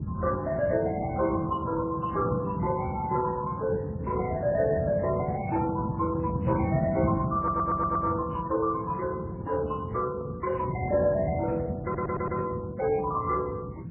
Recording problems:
codec artefacts; Speex, then MP3, log-spectral distance 3 dB, nothing above 2.9 kHz
rumble; below 220 Hz, SNR 6 dB
wind noise; below 210 Hz, SNR 13 dB
audio stuttering; at 7.5 s and at 12 s

